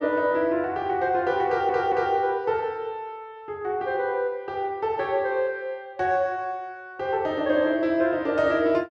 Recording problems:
stutter; at 1.5 s

